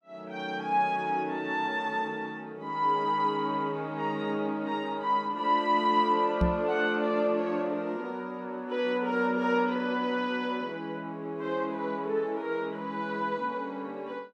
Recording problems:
microphone thump; at 6.5 s; peak +6 dB vs average level

